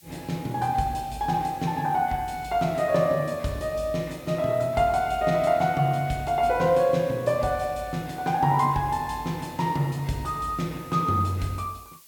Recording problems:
hiss; SNR 25 dB

